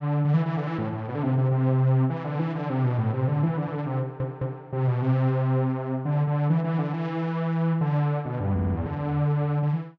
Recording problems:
stutter; at 4 s and at 8.5 s

